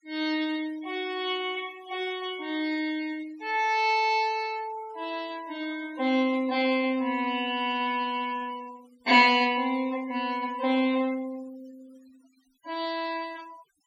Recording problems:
denoising artefacts; signal-to-artefact ratio 22 dB

